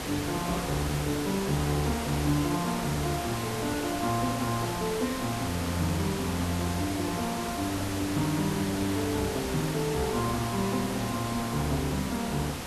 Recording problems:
hiss; slope -4 dB per octave, SNR 4 dB

